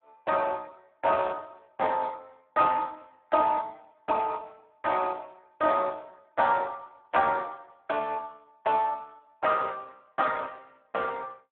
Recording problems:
telephone audio; 300 Hz to 2.8 kHz, Speex

